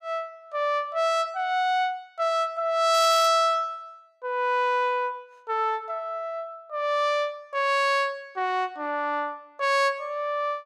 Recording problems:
crackle; at 3 s; loose cable, SNR 15 dB

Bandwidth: 15.5 kHz